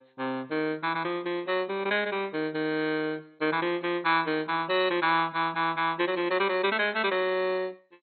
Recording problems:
lossy codec; MP2, log-spectral distance 4 dB, nothing above 4.2 kHz

